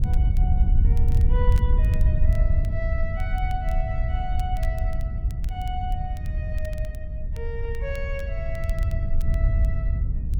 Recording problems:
wind on the microphone; below 74 Hz, SNR -11 dB
crackling; vinyl, SNR 17 dB

